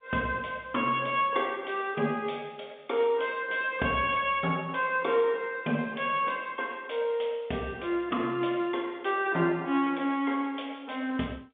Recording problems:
phone line; 190 Hz to 3.6 kHz, G.711

